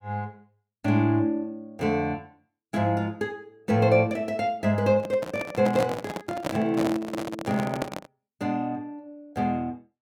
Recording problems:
handling noise; from 5 to 8 s; peak +1 dB vs average level

